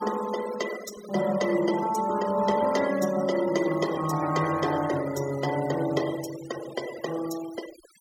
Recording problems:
noise reduction artefacts; signal-to-artefact ratio 14 dB

